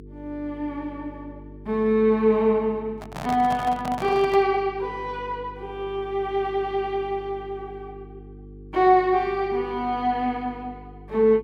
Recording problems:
mains hum; 50 Hz, harmonics up to 450 Hz, SNR 19 dB
microphone handling noise; from 3 to 4.5 s; peak -4 dB vs average level

